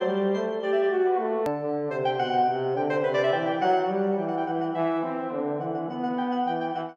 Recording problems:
hard cut with a click; at 1.5 s

